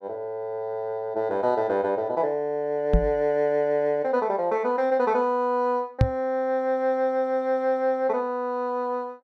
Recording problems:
knock on the microphone; at 3 s and at 6 s; peak +8 dB vs average level

